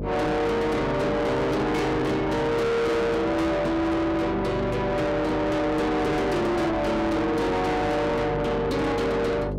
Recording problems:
distortion; soft clipping, signal-to-distortion ratio 6 dB
mains hum; 50 Hz, harmonics up to 1.3 kHz, SNR 7 dB

